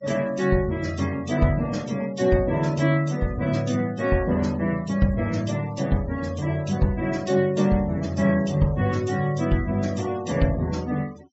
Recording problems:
treble cut off; nothing above 8 kHz
denoising artefacts; signal-to-artefact ratio 23 dB

